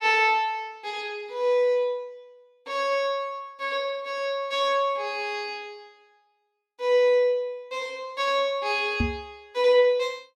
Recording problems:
knock on the microphone; at 9 s; peak +3 dB vs average level

